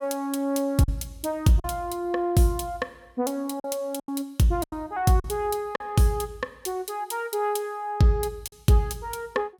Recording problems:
lost packets; 4% of the sound replaced, filled with silence

